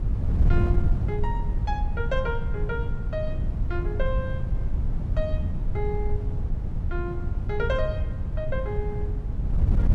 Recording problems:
wind on the microphone; below 98 Hz, SNR -5 dB

